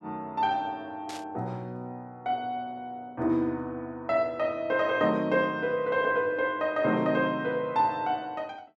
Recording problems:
burst of static; at 1 s; peak -9 dB vs average level

